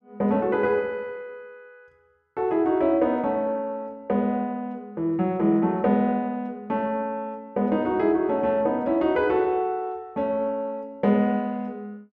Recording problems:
none

